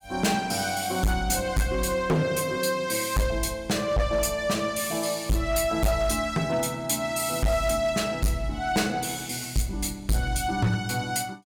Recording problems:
distortion; hard clipping, uneven, signal-to-distortion ratio 6 dB

